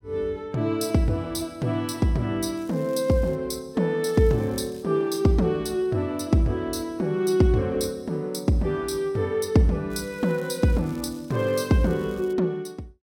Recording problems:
crackling; at 2.5 s, at 4 s and from 10 to 12 s; loose cable, SNR 27 dB

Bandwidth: 16.5 kHz